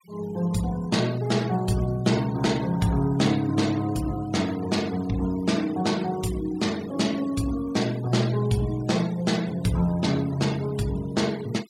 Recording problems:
denoising artefacts; signal-to-artefact ratio 18 dB

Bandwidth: 16 kHz